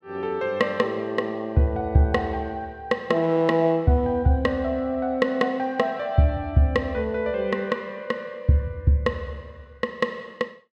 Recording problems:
none

